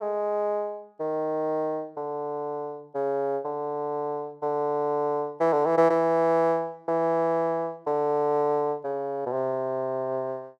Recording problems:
none

